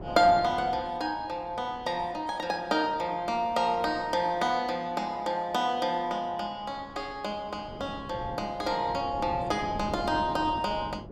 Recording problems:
wind on the microphone; below 390 Hz, SNR 15 dB

